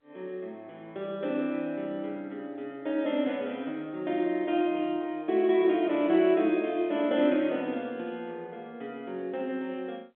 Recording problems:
phone line; 220 Hz to 3.5 kHz, G.711

